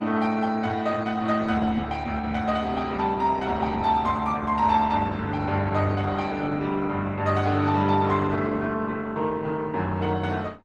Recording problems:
lossy codec; Opus, log-spectral distance 3 dB

